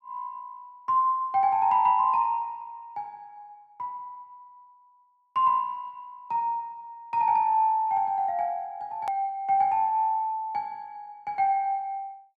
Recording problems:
edit click; at 9 s

